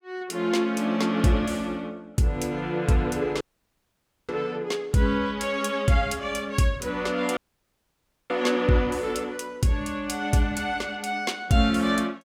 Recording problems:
dropout; at 3.5 s for 1 s and at 7.5 s for 1 s

